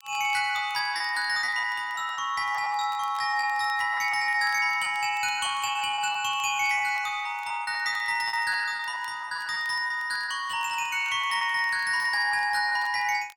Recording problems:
crackling; vinyl, SNR 28 dB
lost packets; 13% of the sound replaced, filled with repeated pitch periods

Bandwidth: 17 kHz